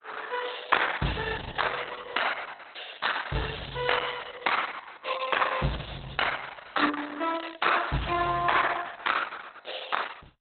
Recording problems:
lossy compression; Opus, log-spectral distance 10 dB, nothing above 4 kHz

